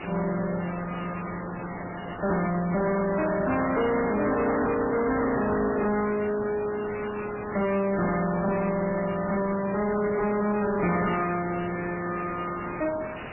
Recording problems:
codec artefacts; MP3, then AAC, log-spectral distance 15 dB
distorted audio; hard clipping, uneven, signal-to-distortion ratio 6 dB
background hiss; SNR 11 dB

